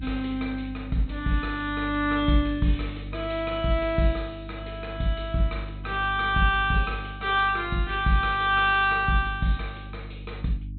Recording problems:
treble cut off; nothing above 4.1 kHz
hum; 50 Hz, harmonics up to 300 Hz, SNR 13 dB

